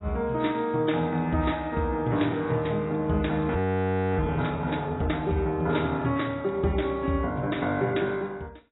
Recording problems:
lossy codec; AAC, log-spectral distance 4 dB, nothing above 3.8 kHz
audio freezing; at 3.5 s for 0.5 s

